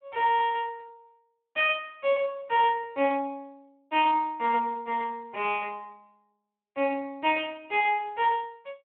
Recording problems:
phone line; 240 Hz to 3.4 kHz, Speex

